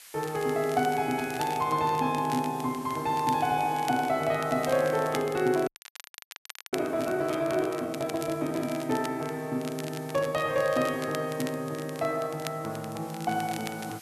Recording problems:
hiss; SNR 20 dB
crackle; vinyl, SNR 16 dB
frozen audio; at 5.5 s for 1 s

